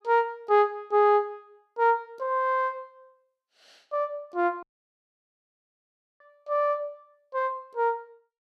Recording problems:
audio cutting out; at 4.5 s for 1.5 s

